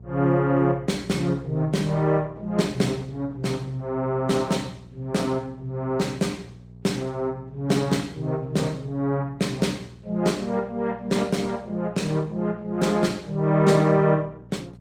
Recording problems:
lossy codec; Opus, log-spectral distance 3 dB, nothing above 19 kHz
hum; 60 Hz, harmonics up to 480 Hz, SNR 19 dB

